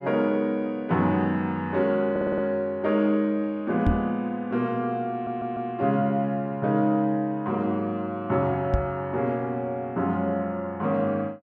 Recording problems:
audio stuttering; at 2 s and at 5 s
microphone thump; at 4 s and at 8.5 s; peak +5 dB vs average level

